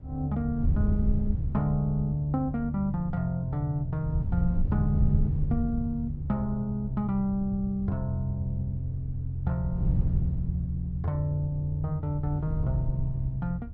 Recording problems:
wind on the microphone; below 100 Hz, SNR 4 dB

